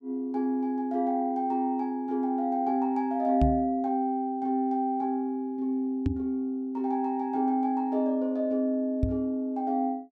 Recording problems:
microphone bump; at 3.5 s, at 6 s and at 9 s; peak +5 dB vs average level

